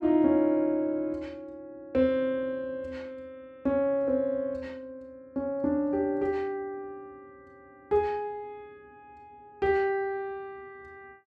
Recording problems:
none

